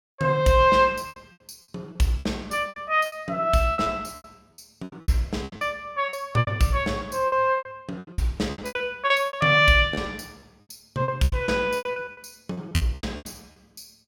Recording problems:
packet loss; 19% of the sound replaced, filled with repeated pitch periods

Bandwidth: 17 kHz